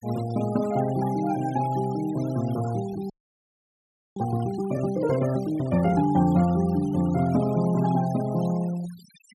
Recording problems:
noise reduction artefacts; signal-to-artefact ratio 20 dB
frozen audio; at 3 s for 1 s

